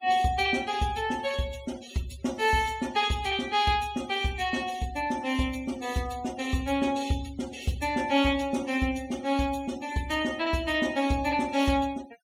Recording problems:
denoising artefacts; signal-to-artefact ratio 19 dB

